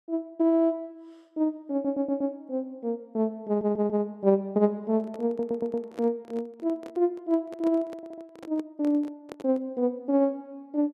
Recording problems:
stutter; 4 times, first at 1.5 s
handling noise; from 5 to 9.5 s; peak -8 dB vs average level

